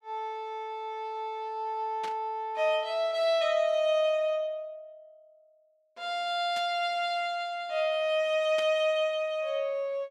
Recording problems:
static burst; at 2 s, at 6.5 s and at 8.5 s; peak -8 dB vs average level

